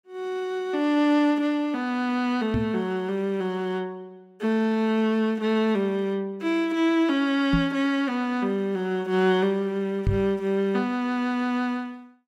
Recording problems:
knock on the microphone; at 2.5 s, at 7.5 s and at 10 s; peak +4 dB vs average level

